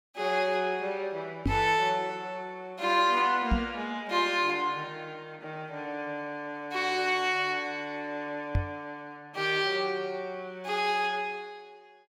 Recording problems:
microphone thump; at 1.5 s, at 3.5 s and at 8.5 s; peak +5 dB vs average level

